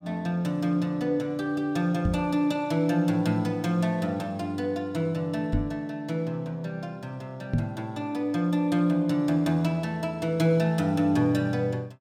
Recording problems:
microphone bump; at 2 s, at 5.5 s and at 7.5 s; peak +4 dB vs average level

